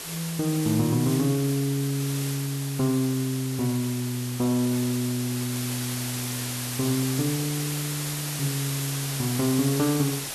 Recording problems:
background hiss; slope -1 dB per octave, SNR 5 dB

